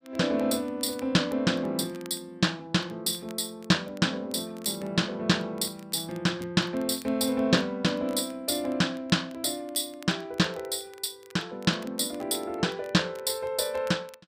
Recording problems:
crackle; vinyl, SNR 26 dB

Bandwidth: 15.5 kHz